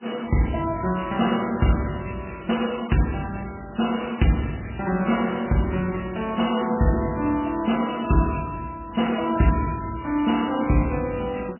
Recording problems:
codec artefacts; MP3, log-spectral distance 9 dB, nothing above 2.9 kHz

